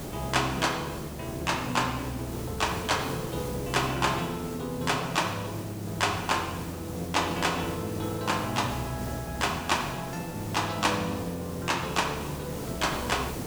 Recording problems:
hiss; SNR 8 dB

